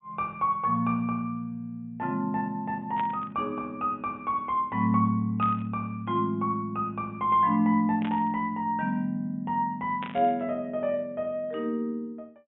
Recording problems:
low-pass filter; nothing above 3.5 kHz
burst of static; 4 times, first at 3 s; peak -7 dB vs average level

